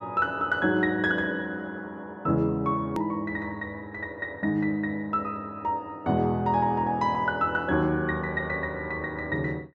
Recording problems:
hard cut with a click; at 3 s

